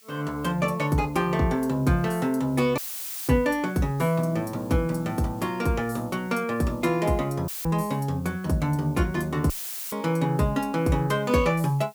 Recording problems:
hiss; SNR 27 dB
dropout; at 3 s for 0.5 s, at 7.5 s and at 9.5 s; filled with static

